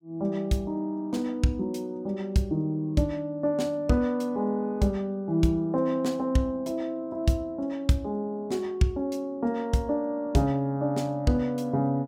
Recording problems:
none

